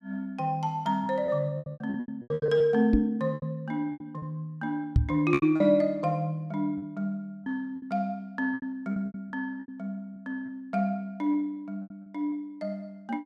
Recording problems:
lost packets; 11% of the sound replaced, filled with repeated pitch periods
microphone thump; at 3 s and at 5 s; peak +10 dB vs average level

